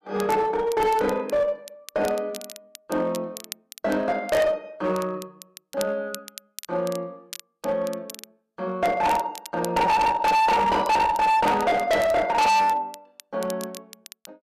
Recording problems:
distorted audio; hard clipping, uneven, signal-to-distortion ratio 6 dB
crackle; vinyl, SNR 19 dB

